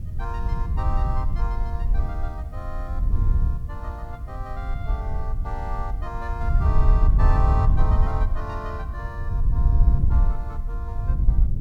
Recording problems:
background hiss; slope -1 dB per octave, SNR 29 dB
wind noise; below 72 Hz, SNR -10 dB

